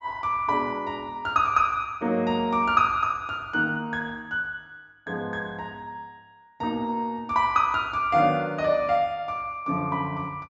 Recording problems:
low-pass filter; nothing above 8 kHz

